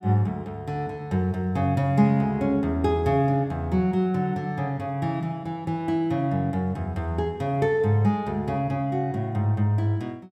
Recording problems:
none

